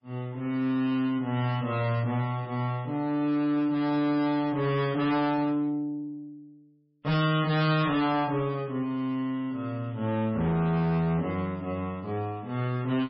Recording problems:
lossy codec; MP3, log-spectral distance 2 dB, nothing above 5.3 kHz
distortion; hard clipping, signal-to-distortion ratio 8 dB

